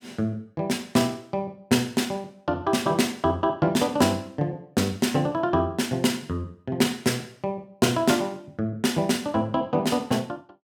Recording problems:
none

